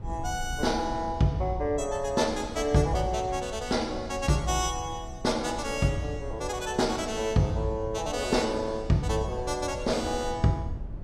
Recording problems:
low-frequency rumble; below 110 Hz, SNR 13 dB

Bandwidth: 14.5 kHz